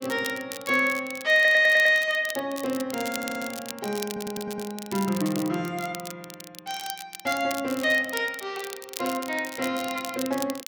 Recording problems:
crackling; vinyl, SNR 14 dB
stutter; at 1.5 s, at 3 s and at 4 s

